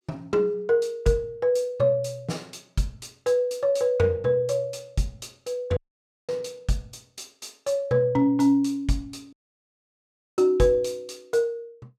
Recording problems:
audio cutting out; at 6 s for 0.5 s and at 9.5 s for 1 s

